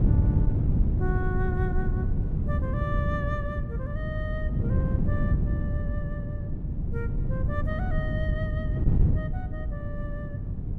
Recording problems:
hum; 50 Hz, harmonics up to 450 Hz, SNR 3 dB
wind noise; below 140 Hz, SNR -10 dB

